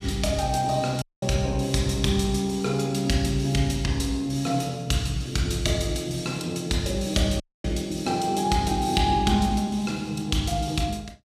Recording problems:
dropout; at 1 s and at 7.5 s

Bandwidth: 14.5 kHz